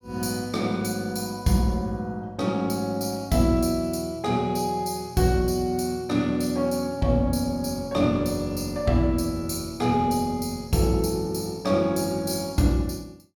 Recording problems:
none

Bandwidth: 18 kHz